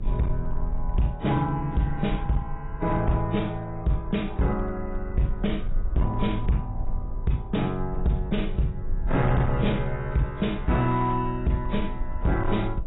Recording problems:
lossy compression; AAC, log-spectral distance 2 dB, nothing above 3.8 kHz
distortion; hard clipping, signal-to-distortion ratio 12 dB
hum; 60 Hz, harmonics up to 660 Hz, SNR 30 dB
low-frequency rumble; below 48 Hz, strongest tone 18 Hz, SNR 8 dB

